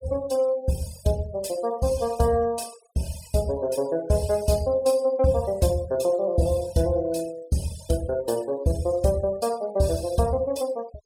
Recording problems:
denoising artefacts; signal-to-artefact ratio 21 dB

